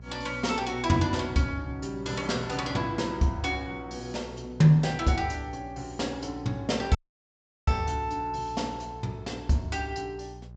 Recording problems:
treble missing; nothing above 8 kHz
electrical hum; 60 Hz, harmonics up to 600 Hz, SNR 17 dB
audio cutting out; at 7 s for 0.5 s

